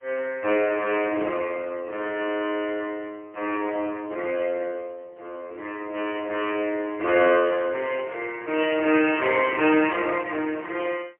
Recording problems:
phone line; 280 Hz to 3 kHz, AMR-NB, then MP3

